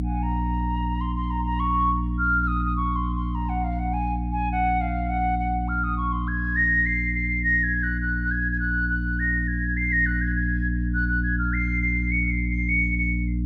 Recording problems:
mains hum; 60 Hz, harmonics up to 300 Hz, SNR 2 dB

